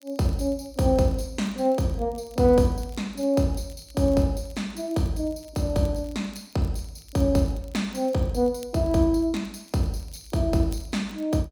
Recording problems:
crackling; vinyl, SNR 29 dB

